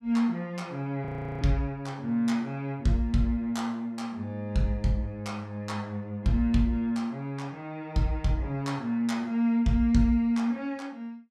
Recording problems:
audio freezing; at 1 s

